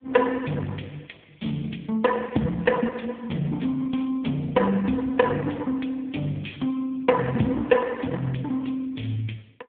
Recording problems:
telephone audio; 110 Hz to 3.5 kHz, AMR-NB

